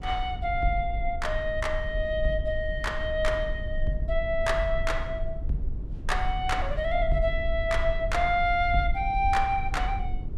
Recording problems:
rumble; below 56 Hz, SNR 6 dB

